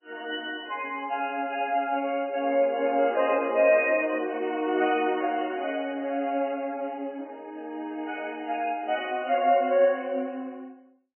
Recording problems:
lossy codec; MP3, log-spectral distance 3 dB, nothing above 2.5 kHz

